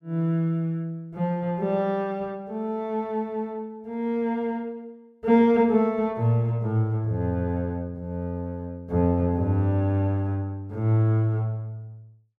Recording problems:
none

